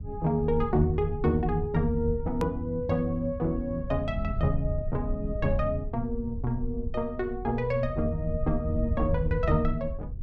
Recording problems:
low-frequency rumble; below 82 Hz, SNR 7 dB
edit click; at 2.5 s

